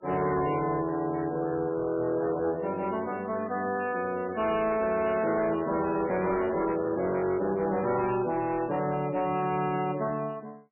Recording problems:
codec artefacts; MP3, log-spectral distance 3 dB, nothing above 2.4 kHz
distortion; soft clipping, signal-to-distortion ratio 12 dB

